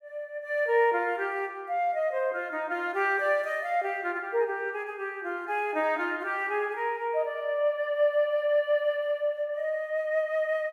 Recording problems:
none

